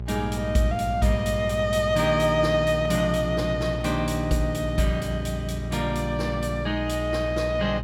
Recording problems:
electrical hum; 60 Hz, harmonics up to 600 Hz, SNR 8 dB

